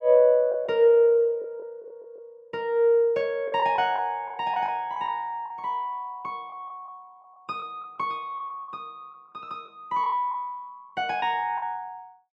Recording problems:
packet loss; 7% of the sound replaced, filled with the last packet

